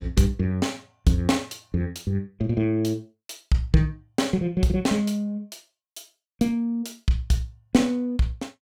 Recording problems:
none

